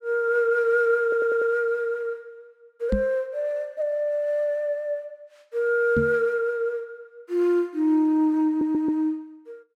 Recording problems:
audio stuttering; at 1 s and at 8.5 s
microphone thump; at 3 s and at 6 s; peak +2 dB vs average level

